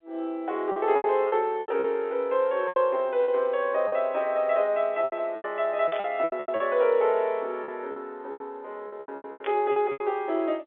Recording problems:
phone line; 280 Hz to 3.6 kHz, G.711
lost packets; 14% of the sound replaced, filled with repeated pitch periods
static burst; at 6 s and at 9.5 s; peak -7 dB vs average level

